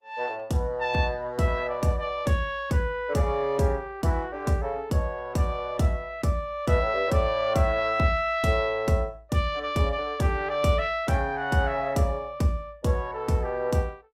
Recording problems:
lossy compression; Opus, log-spectral distance 2 dB, nothing above 18.3 kHz

